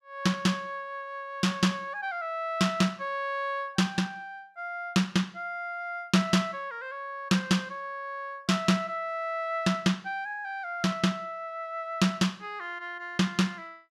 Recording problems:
none

